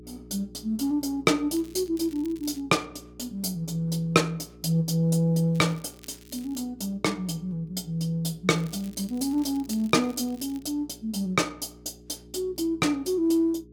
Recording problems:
hum; 60 Hz, harmonics up to 420 Hz, SNR 22 dB
crackle; from 1.5 to 2.5 s, from 5.5 to 6.5 s and from 8.5 to 11 s; loose cable, SNR 25 dB

